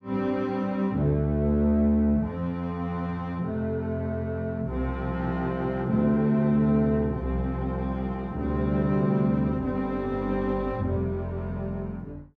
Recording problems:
none

